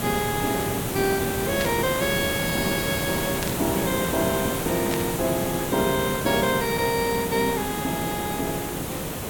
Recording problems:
hiss; slope -5 dB per octave, SNR 2 dB
static burst; at 1.5 s, at 3.5 s and at 5 s; peak -1 dB vs average level

